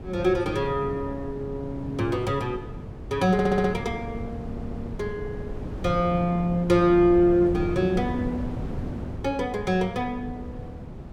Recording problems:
wind on the microphone; below 260 Hz, SNR 11 dB
stutter; at 3.5 s and at 4.5 s

